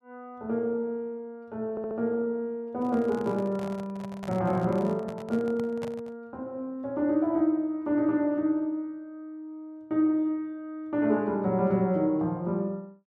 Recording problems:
stutter; at 1.5 s
handling noise; from 2.5 to 6 s; peak -6 dB vs average level

